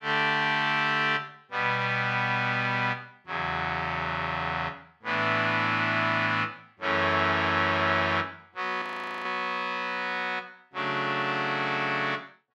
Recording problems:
audio freezing; at 9 s

